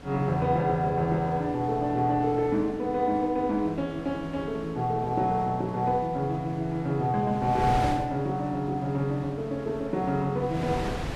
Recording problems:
wind on the microphone; below 850 Hz, SNR 13 dB

